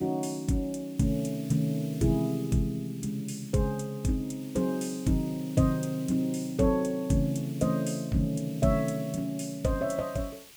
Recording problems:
hiss; SNR 21 dB

